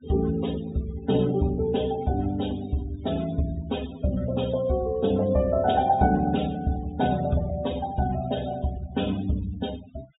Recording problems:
treble cut off; nothing above 4 kHz
denoising artefacts; signal-to-artefact ratio 19 dB

